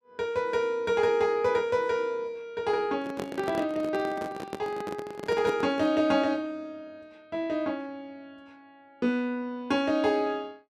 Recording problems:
microphone handling noise; from 3 to 6 s; peak -1 dB vs average level

